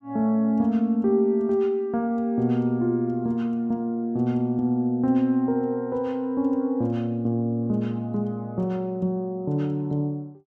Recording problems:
none

